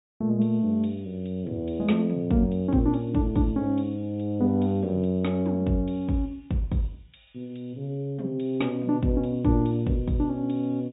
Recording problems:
treble missing; nothing above 4 kHz

